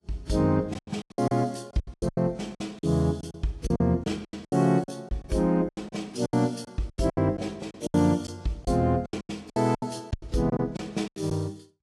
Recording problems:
lossy codec; AAC, log-spectral distance 3 dB, nothing above 11 kHz
packet loss; 17% of the sound replaced, filled with silence

